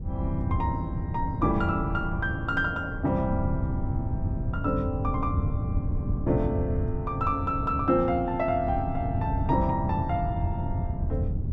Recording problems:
wind on the microphone; below 140 Hz, SNR 2 dB

